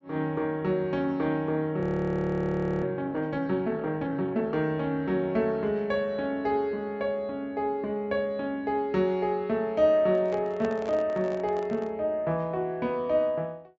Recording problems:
low-pass filter; nothing above 8 kHz
frozen audio; at 2 s for 1 s
handling noise; from 10 to 12 s; peak -5 dB vs average level

